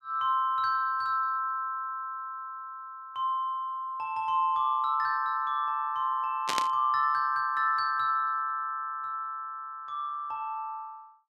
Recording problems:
burst of static; at 6.5 s; peak +2 dB vs average level

